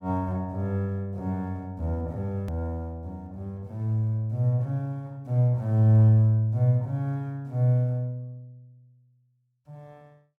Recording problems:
edit click; at 2.5 s

